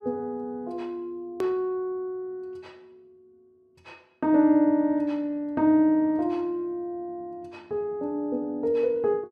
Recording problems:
edit click; at 1.5 s

